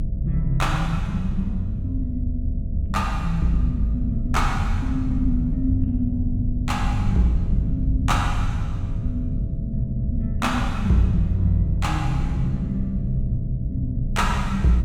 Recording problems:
hum; 60 Hz, harmonics up to 660 Hz, SNR 20 dB
rumble; below 120 Hz, SNR 2 dB

